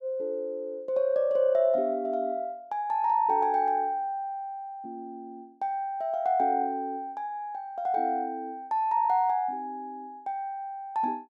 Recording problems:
none

